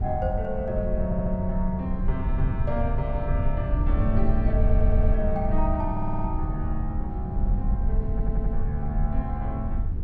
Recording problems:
rumble; below 78 Hz, SNR -3 dB
audio stuttering; 4 times, first at 1 s

